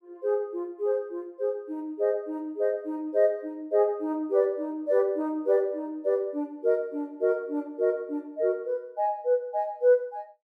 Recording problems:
none

